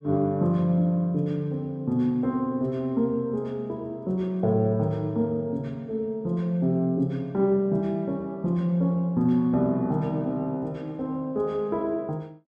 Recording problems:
none

